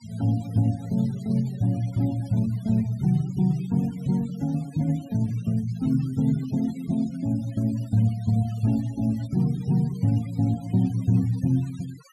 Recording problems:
denoising artefacts; signal-to-artefact ratio 24 dB

